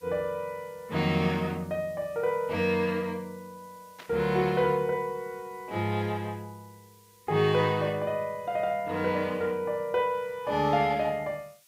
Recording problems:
hiss; slope +3 dB per octave, SNR 29 dB
burst of static; at 4 s; peak -12 dB vs average level

